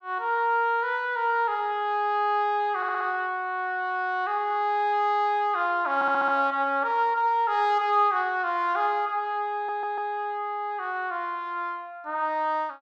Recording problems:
stutter; at 3 s, at 6 s and at 9.5 s

